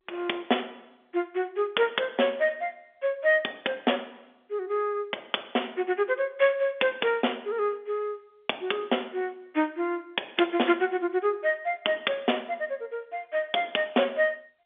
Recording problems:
telephone audio; 190 Hz to 3.6 kHz, G.711

